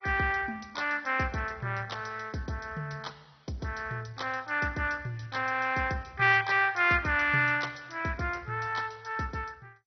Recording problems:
lossy codec; MP2, log-spectral distance 5 dB, nothing above 6 kHz

